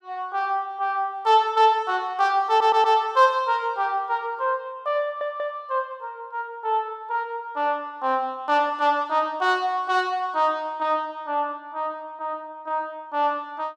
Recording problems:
stutter; at 2.5 s and at 5 s

